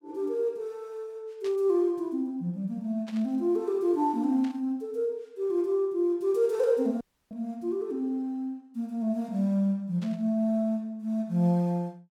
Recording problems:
static burst; 4 times, first at 1.5 s; peak -13 dB vs average level
audio cutting out; at 7 s

